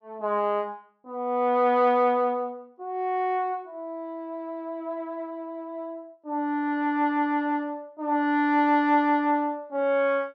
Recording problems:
none

